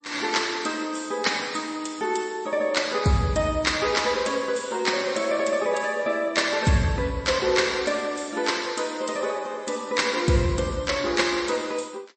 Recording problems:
lossy codec; MP3, log-spectral distance 5 dB, nothing above 8.2 kHz

